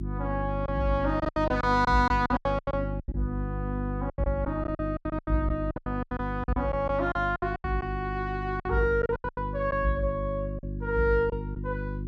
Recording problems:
hum; 50 Hz, harmonics up to 350 Hz, SNR 6 dB
lost packets; 15% of the sound replaced, filled with silence

